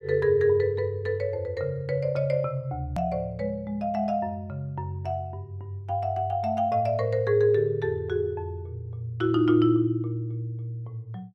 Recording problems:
hard cut with a click; at 3 s

